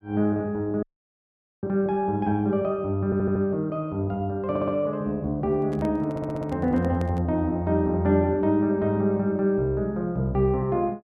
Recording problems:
dropout; at 1 s for 1 s
stutter; at 3 s, at 4.5 s and at 6 s
handling noise; from 5.5 to 7 s; peak -8 dB vs average level

